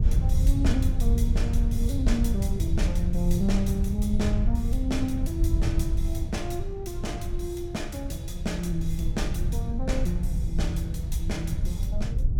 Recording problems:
low-frequency rumble; below 88 Hz, SNR -3 dB

